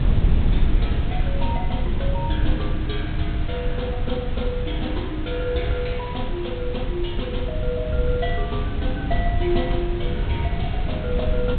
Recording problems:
treble cut off; nothing above 4 kHz
background hiss; SNR 11 dB
low-frequency rumble; below 96 Hz, SNR -2 dB

